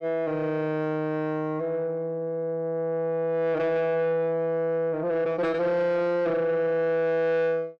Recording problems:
distorted audio; soft clipping, signal-to-distortion ratio 11 dB

